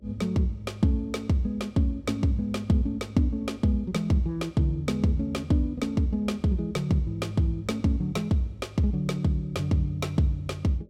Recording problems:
electrical hum; 50 Hz, harmonics up to 600 Hz, SNR 31 dB

